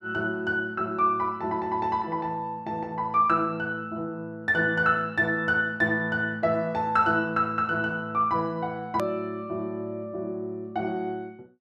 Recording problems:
edit click; at 9 s

